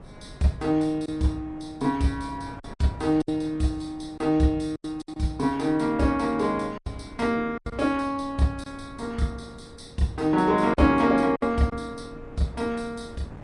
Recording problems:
lossy compression; Vorbis, log-spectral distance 2 dB, nothing above 10.1 kHz
wind noise; below 400 Hz, SNR 20 dB
packet loss; 5% of the sound replaced, filled with silence

